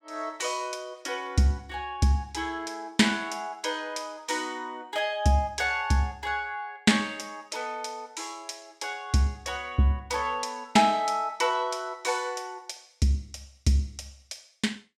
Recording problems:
none

